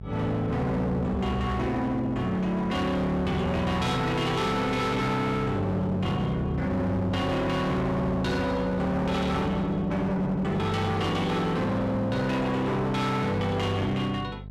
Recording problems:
distorted audio; hard clipping, uneven, signal-to-distortion ratio 7 dB
electrical hum; 50 Hz, harmonics up to 650 Hz, SNR 13 dB

